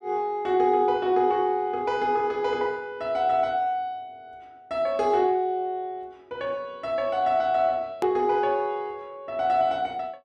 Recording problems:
click at an edit; at 8 s

